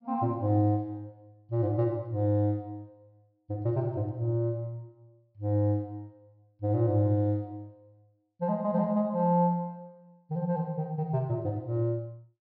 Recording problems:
treble cut off; nothing above 5.6 kHz

